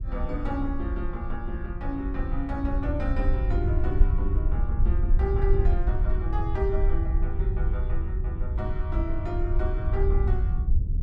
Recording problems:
rumble; below 68 Hz, SNR -6 dB

